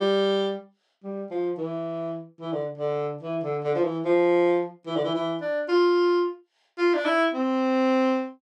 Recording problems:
none

